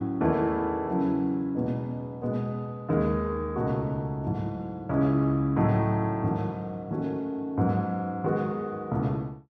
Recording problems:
none

